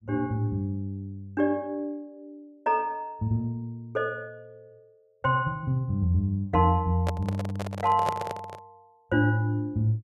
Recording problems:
microphone handling noise; from 7 to 8.5 s; peak +2 dB vs average level

